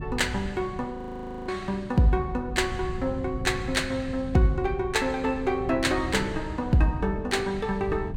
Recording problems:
wind noise; below 140 Hz, SNR 11 dB
frozen audio; at 1 s for 0.5 s

